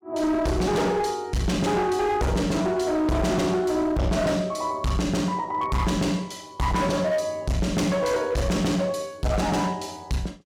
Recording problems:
distortion; hard clipping, signal-to-distortion ratio 7 dB

